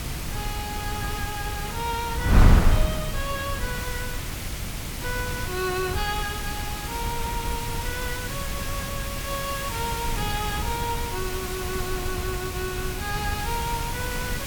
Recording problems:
background hiss; slope -1 dB per octave, SNR 2 dB
wind noise; below 140 Hz, SNR -2 dB

